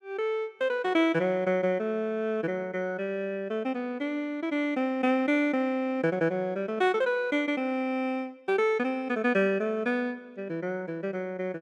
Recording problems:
none

